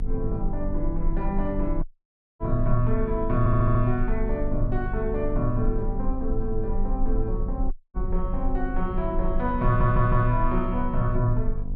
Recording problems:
hum; 50 Hz, harmonics up to 750 Hz, SNR 10 dB
low-frequency rumble; below 34 Hz, strongest tone 20 Hz, SNR 5 dB
dropout; at 2 s for 0.5 s and at 7.5 s
audio stuttering; at 3.5 s and at 9.5 s

